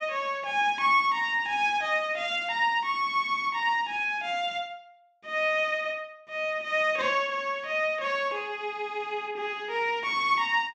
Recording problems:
none

